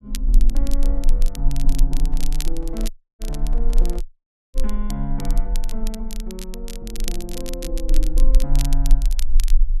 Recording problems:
low-frequency rumble; below 34 Hz, strongest tone 20 Hz, SNR -8 dB
crackle; vinyl, SNR 5 dB
microphone handling noise; from 2 to 4 s; peak -7 dB vs average level
audio cutting out; at 3 s and at 4 s for 0.5 s

